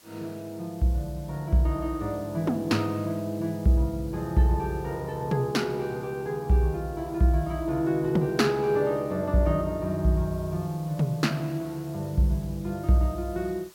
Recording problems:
background hiss; slope 0 dB per octave, SNR 25 dB

